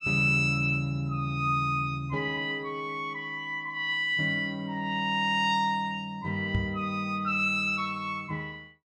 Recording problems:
microphone thump; at 6.5 s; peak +2 dB vs average level

